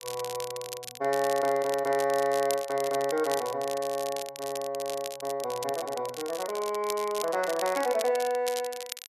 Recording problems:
crackle; vinyl, SNR 11 dB

